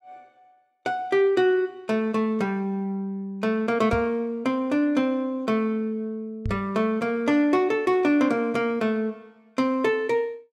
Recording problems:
microphone bump; at 4 s and at 6.5 s; peak -1 dB vs average level

